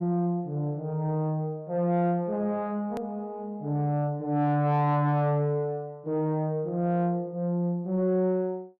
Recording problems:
distortion; soft clipping, signal-to-distortion ratio 11 dB
hard cut with a click; at 3 s

